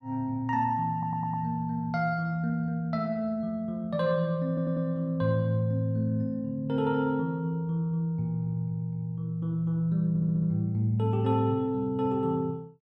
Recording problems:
audio stuttering; at 1 s, at 4.5 s and at 10 s

